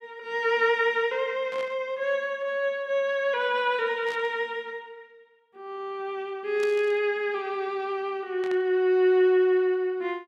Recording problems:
burst of static; 4 times, first at 1.5 s; peak -11 dB vs average level

